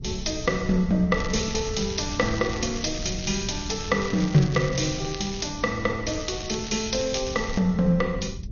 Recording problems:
lossy compression; MP2, then Vorbis, log-spectral distance 10 dB, nothing above 6.7 kHz
low-frequency rumble; below 130 Hz, SNR 12 dB
crackle; from 1 to 5.5 s and from 6 to 7.5 s; loose cable, SNR 13 dB

